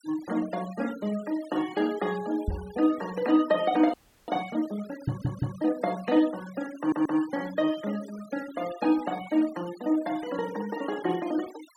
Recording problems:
noise reduction artefacts; signal-to-artefact ratio 18 dB
knock on the microphone; at 2.5 s and at 5 s; peak +3 dB vs average level
frozen audio; at 4 s
audio stuttering; at 5 s and at 7 s

